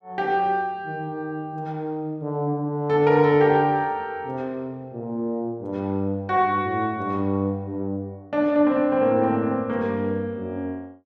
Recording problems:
none

